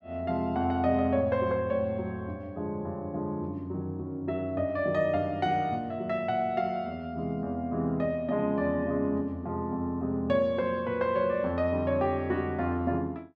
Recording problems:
none

